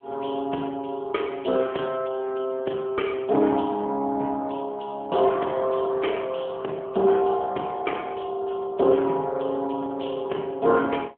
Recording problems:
phone line; 280 Hz to 3.3 kHz, AMR-NB

